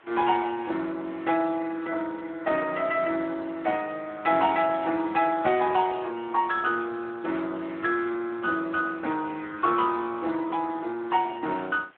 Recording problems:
telephone audio; 240 Hz to 3.8 kHz, Speex
hiss; SNR 29 dB

